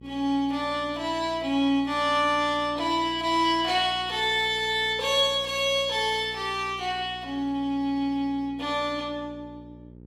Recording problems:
electrical hum; 60 Hz, harmonics up to 540 Hz, SNR 21 dB

